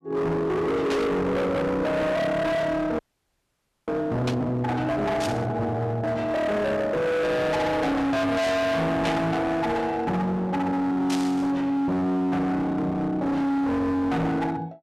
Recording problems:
distorted audio; hard clipping, signal-to-distortion ratio 6 dB
burst of static; 5 times, first at 1 s; peak -2 dB vs average level
audio freezing; at 3 s for 1 s

